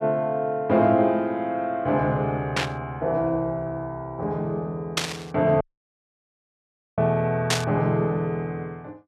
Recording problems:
static burst; at 2.5 s, at 5 s and at 7.5 s; peak +6 dB vs average level
dropout; at 5.5 s for 1.5 s

